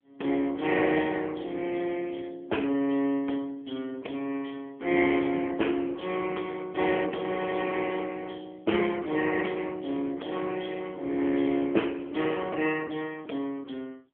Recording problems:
phone line; 240 Hz to 3.2 kHz, AMR-NB

